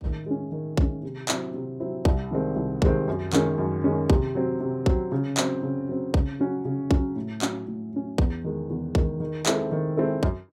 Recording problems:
none

